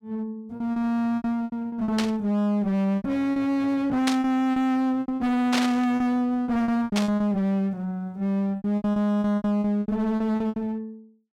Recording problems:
distorted audio; hard clipping, uneven, signal-to-distortion ratio 5 dB
packet loss; 14% of the sound replaced, filled with repeated pitch periods
burst of static; 4 times, first at 2 s; peak +2 dB vs average level

